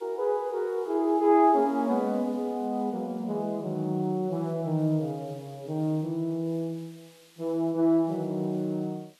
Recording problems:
hiss; slope +1 dB per octave, SNR 29 dB

